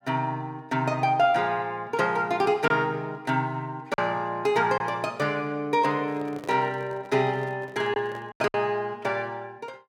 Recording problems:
lost packets; 2% of the sound replaced, filled with silence
microphone handling noise; from 6 to 8.5 s; peak -11 dB vs average level

